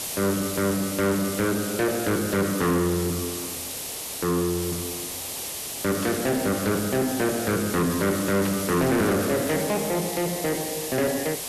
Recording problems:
distortion; soft clipping, signal-to-distortion ratio 8 dB
hiss; SNR 6 dB
static burst; at 6 s and at 8.5 s; peak -6 dB vs average level

